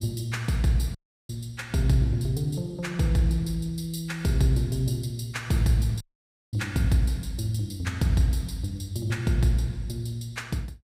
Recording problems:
audio cutting out; at 1 s and at 6 s for 0.5 s

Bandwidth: 15.5 kHz